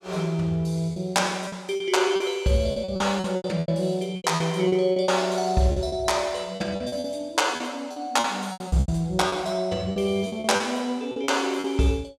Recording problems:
packet loss; 13% of the sound replaced, filled with repeated pitch periods

